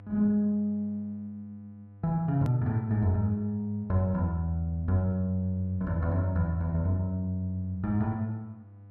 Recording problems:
hum; 50 Hz, harmonics up to 700 Hz, SNR 20 dB
edit click; at 2.5 s

